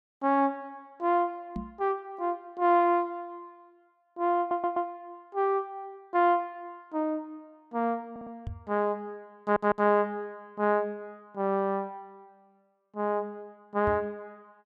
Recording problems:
knock on the microphone; at 1.5 s, at 8.5 s and at 14 s; peak -4 dB vs average level
audio stuttering; at 4.5 s, at 8 s and at 9.5 s

